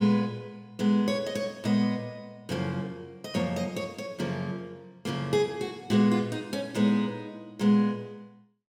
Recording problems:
none

